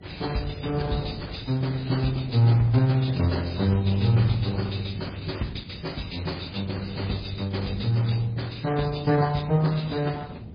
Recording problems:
lossy compression; Opus, then MP3, log-spectral distance 5 dB, nothing above 11 kHz
wind noise; below 190 Hz, SNR 14 dB

